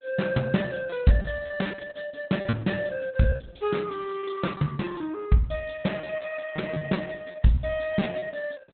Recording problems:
codec artefacts; Opus, log-spectral distance 4 dB, nothing above 4 kHz
lost packets; 16% of the sound replaced, filled with repeated pitch periods

